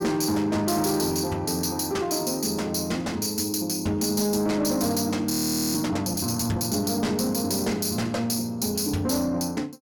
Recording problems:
distorted audio; soft clipping, signal-to-distortion ratio 11 dB
frozen audio; at 5.5 s

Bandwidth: 17.5 kHz